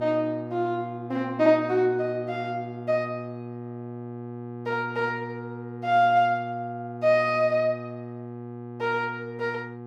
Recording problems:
electrical hum; 60 Hz, harmonics up to 1.6 kHz, SNR 11 dB

